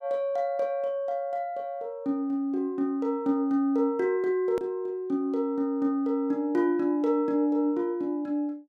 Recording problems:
hard cut with a click; at 4.5 s

